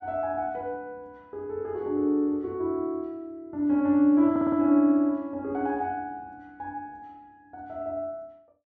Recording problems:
stutter; at 4.5 s

